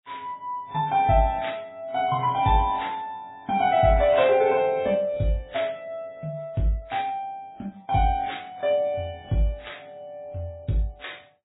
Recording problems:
codec artefacts; AAC, then MP3, log-spectral distance 3 dB, nothing above 3.5 kHz

